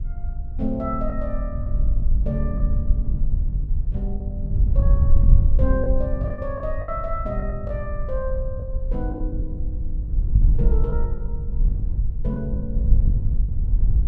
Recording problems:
wind noise; below 64 Hz, SNR -6 dB
packet loss; 8% of the sound replaced, filled with the last packet

